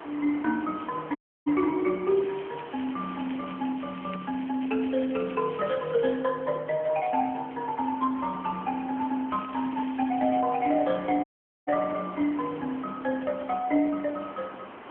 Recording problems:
telephone audio; 220 Hz to 3.2 kHz, AMR-NB
hiss; SNR 15 dB
dropout; at 1 s and at 11 s
crackling; from 2 to 6 s and from 9.5 to 10 s; loose cable, SNR 19 dB

